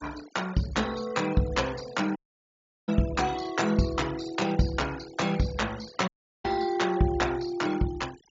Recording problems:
treble missing; nothing above 7.3 kHz
denoising artefacts; signal-to-artefact ratio 17 dB
audio cutting out; at 2 s for 0.5 s and at 6 s

